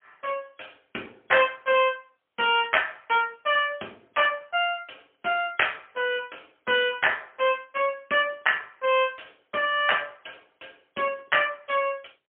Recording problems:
phone line; 260 Hz to 3.3 kHz, AMR-NB, then MP3

